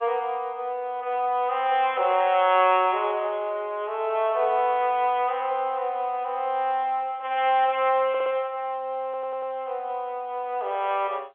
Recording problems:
telephone audio; 300 Hz to 3.4 kHz, G.711
audio stuttering; at 8 s and at 9 s

